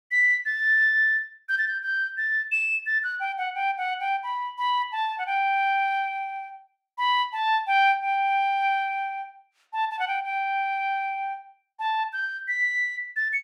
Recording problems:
none

